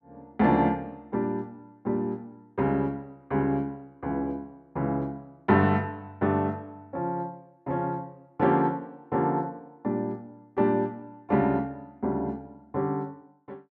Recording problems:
none

